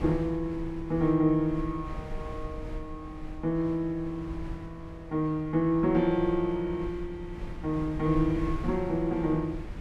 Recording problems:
wind noise; below 110 Hz, SNR 13 dB

